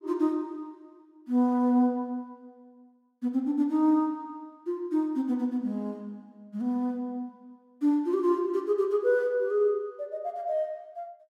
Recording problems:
none

